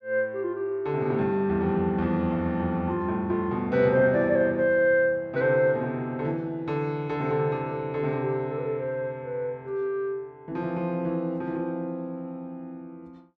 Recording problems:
none

